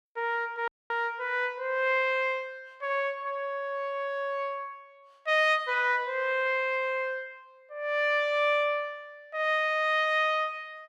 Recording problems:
audio cutting out; at 0.5 s

